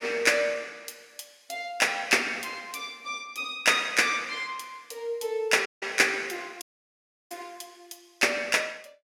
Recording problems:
audio cutting out; at 5.5 s and at 6.5 s for 0.5 s

